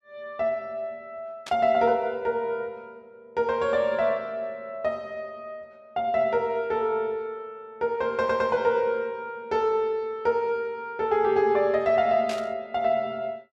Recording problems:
burst of static; at 1.5 s and at 12 s; peak -6 dB vs average level
audio stuttering; at 8 s

